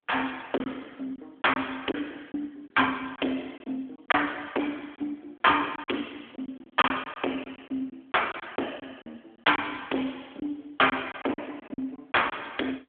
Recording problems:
telephone audio; 240 Hz to 3.4 kHz, AMR-NB
distorted audio; hard clipping, signal-to-distortion ratio 8 dB
lost packets; 9% of the sound replaced, filled with silence

